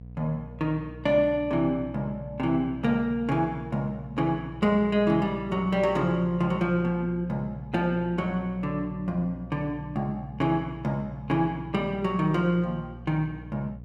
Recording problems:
hum; 60 Hz, harmonics up to 540 Hz, SNR 16 dB

